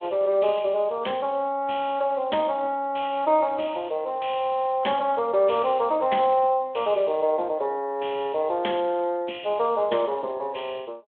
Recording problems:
telephone audio; 240 Hz to 3.4 kHz, Speex

